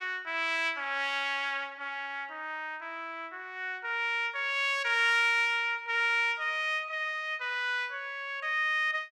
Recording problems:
none

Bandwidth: 15.5 kHz